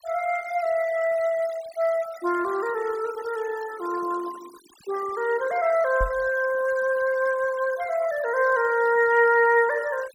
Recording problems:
noise reduction artefacts; signal-to-artefact ratio 19 dB
microphone thump; at 6 s; peak -2 dB vs average level

